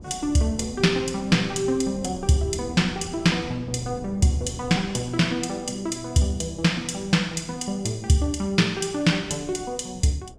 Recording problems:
wind noise; below 270 Hz, SNR 18 dB

